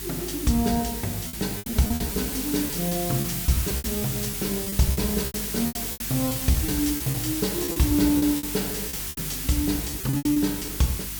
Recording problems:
hum; 50 Hz, harmonics up to 350 Hz, SNR 15 dB
hiss; slope +3 dB per octave, SNR 3 dB
lost packets; 14% of the sound replaced, filled with repeated pitch periods

